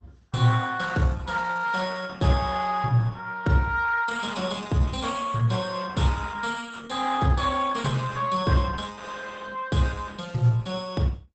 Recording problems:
lossy codec; Opus, log-spectral distance 5 dB, nothing above 8 kHz

